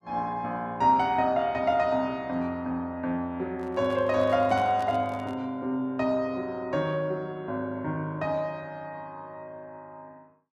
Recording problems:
handling noise; from 3.5 to 5.5 s; peak -9 dB vs average level

